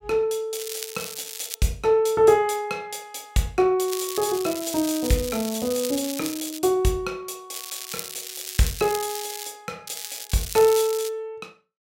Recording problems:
crackling; 4 times, first at 0.5 s; loose cable, SNR 9 dB

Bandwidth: 16 kHz